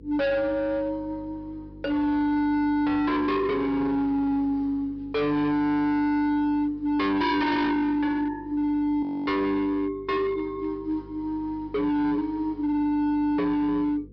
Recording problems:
treble missing; nothing above 5.5 kHz
distorted audio; hard clipping, signal-to-distortion ratio 7 dB
hum; 50 Hz, harmonics up to 500 Hz, SNR 22 dB
audio freezing; at 9 s

